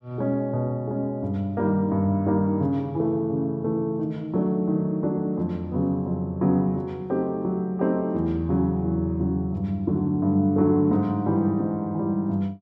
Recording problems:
none

